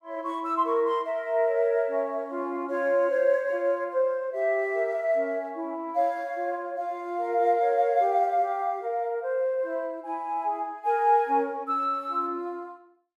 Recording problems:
none

